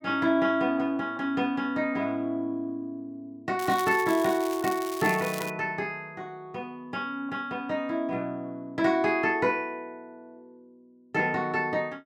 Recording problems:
crackling; from 3.5 to 5.5 s; loose cable, SNR 12 dB

